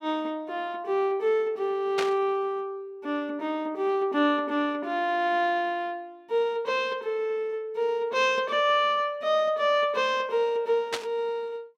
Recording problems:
burst of static; at 2 s and at 11 s; peak +1 dB vs average level

